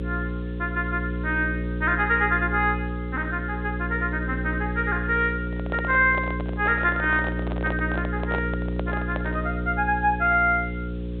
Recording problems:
treble missing; nothing above 4 kHz
hum; 60 Hz, harmonics up to 540 Hz, SNR 5 dB
hiss; SNR 30 dB
microphone handling noise; from 5.5 to 9.5 s; peak -2 dB vs average level

